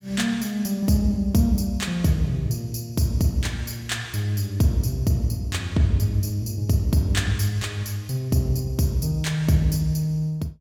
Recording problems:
none

